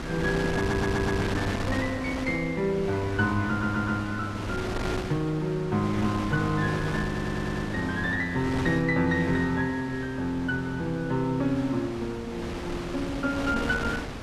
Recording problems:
wind noise; below 1.3 kHz, SNR 6 dB
stutter; at 0.5 s, at 3.5 s and at 7 s

